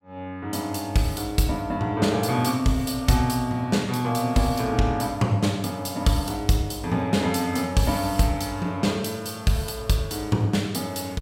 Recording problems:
none

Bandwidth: 16 kHz